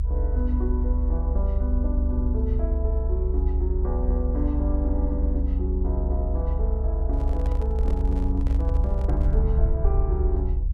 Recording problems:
rumble; below 66 Hz, strongest tone 40 Hz, SNR -7 dB
handling noise; from 7 to 9.5 s; peak -6 dB vs average level

